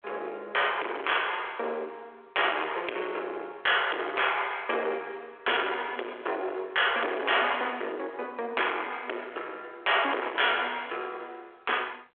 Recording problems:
phone line; 300 Hz to 3.4 kHz, G.726
distortion; soft clipping, signal-to-distortion ratio 11 dB

